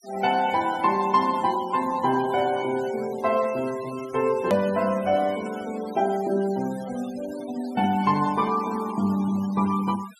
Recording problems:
noise reduction artefacts; signal-to-artefact ratio 18 dB
click at an edit; at 4.5 s

